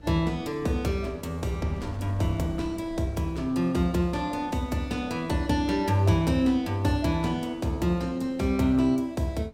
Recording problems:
wind noise; below 340 Hz, SNR 22 dB

